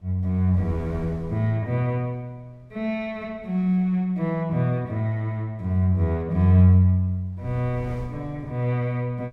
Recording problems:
wind noise; below 110 Hz, SNR 21 dB

